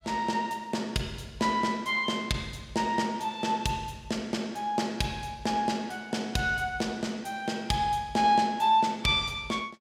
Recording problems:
none

